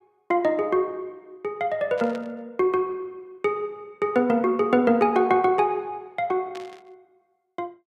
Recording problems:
static burst; at 2 s and at 6.5 s; peak -13 dB vs average level

